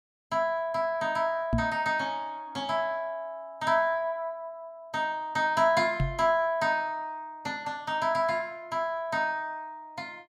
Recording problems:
microphone thump; at 1.5 s and at 6 s; peak +5 dB vs average level

